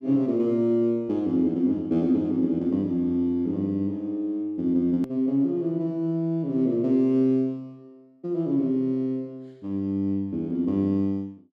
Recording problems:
click at an edit; at 5 s

